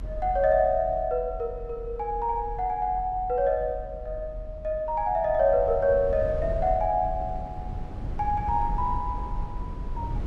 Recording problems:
rumble; below 90 Hz, SNR 11 dB

